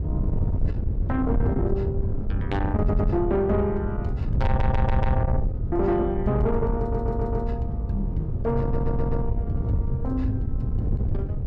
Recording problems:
distorted audio; soft clipping, signal-to-distortion ratio 12 dB
wind noise; below 120 Hz, SNR 0 dB
audio stuttering; 4 times, first at 3 s

